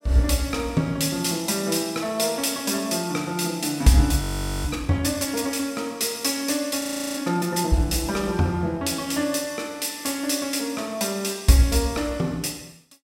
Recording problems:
audio freezing; at 4 s and at 7 s

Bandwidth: 16 kHz